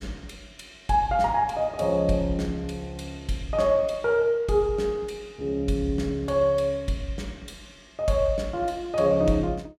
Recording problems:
none

